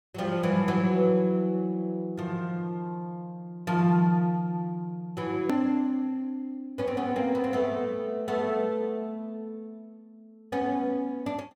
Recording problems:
edit click; at 5.5 s

